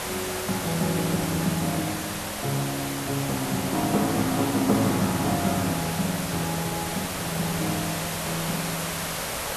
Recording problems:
background hiss; SNR 2 dB

